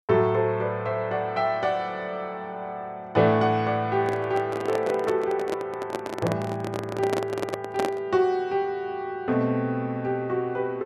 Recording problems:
handling noise; from 4 to 8 s; peak +2 dB vs average level

